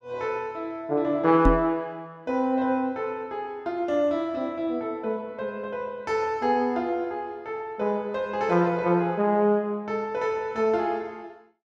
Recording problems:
microphone thump; at 1.5 s; peak +8 dB vs average level

